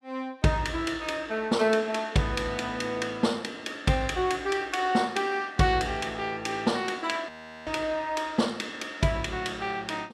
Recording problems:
audio freezing; at 7.5 s

